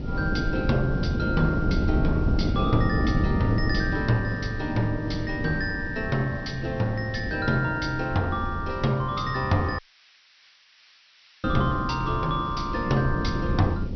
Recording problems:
low-pass filter; nothing above 5.8 kHz
hiss; SNR 27 dB
wind noise; below 240 Hz, SNR 3 dB
audio cutting out; at 10 s for 1.5 s

